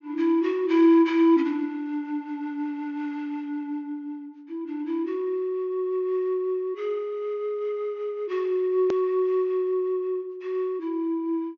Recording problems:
low-pass filter; nothing above 6.8 kHz
click at an edit; at 9 s

